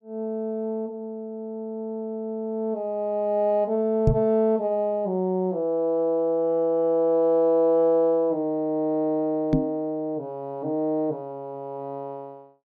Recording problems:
knock on the microphone; at 4 s and at 9.5 s; peak +7 dB vs average level

